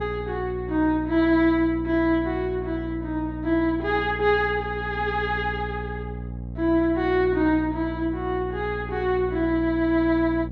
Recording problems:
treble cut off; nothing above 7.2 kHz
hum; 60 Hz, harmonics up to 600 Hz, SNR 11 dB

